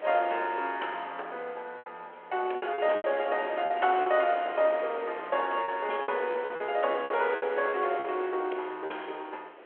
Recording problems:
phone line; 320 Hz to 3.3 kHz, G.726
wind on the microphone; below 1.5 kHz, SNR 13 dB
packet loss; 8% of the sound replaced, filled with repeated pitch periods

